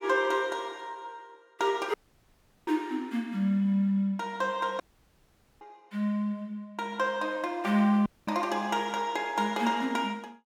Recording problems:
dropout; at 2 s for 0.5 s, at 5 s for 1 s and at 8 s

